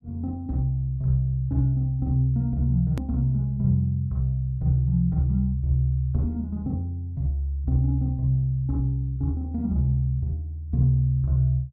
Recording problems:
click at an edit; at 3 s

